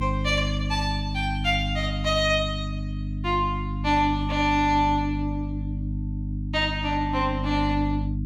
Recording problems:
electrical hum; 50 Hz, harmonics up to 300 Hz, SNR 4 dB

